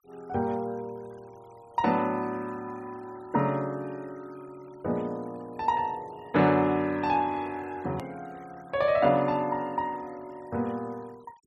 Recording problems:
noise reduction artefacts; signal-to-artefact ratio 27 dB
edit click; at 8 s

